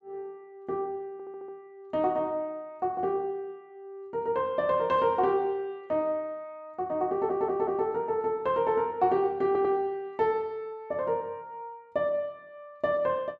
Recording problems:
stutter; at 1 s, at 7 s and at 9.5 s

